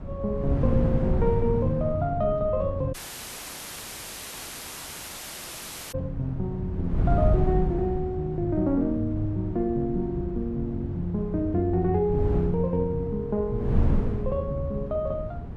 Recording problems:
wind noise; below 150 Hz, SNR 3 dB
dropout; at 3 s for 3 s

